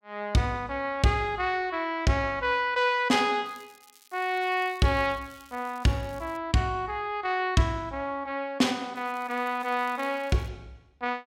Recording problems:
crackling; from 3.5 to 6.5 s and from 9 to 10 s; loose cable, SNR 27 dB

